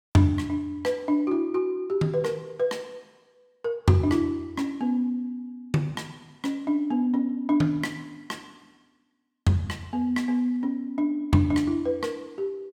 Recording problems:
none

